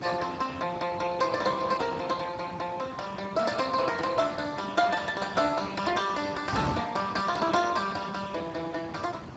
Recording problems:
lossy compression; Speex, log-spectral distance 5 dB, nothing above 7.6 kHz
wind on the microphone; below 920 Hz, SNR 11 dB

